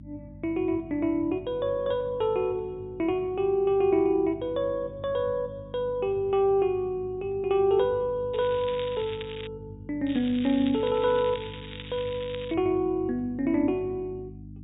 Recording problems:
treble cut off; nothing above 4 kHz
hum; 50 Hz, harmonics up to 300 Hz, SNR 18 dB
crackling; from 8.5 to 9.5 s and from 10 to 13 s; loose cable, SNR 15 dB

